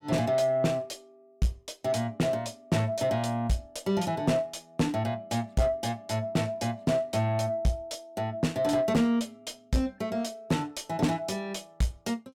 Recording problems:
distortion; soft clipping, signal-to-distortion ratio 11 dB

